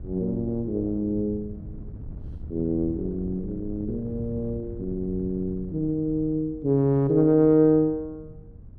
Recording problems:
wind noise; below 140 Hz, SNR 16 dB

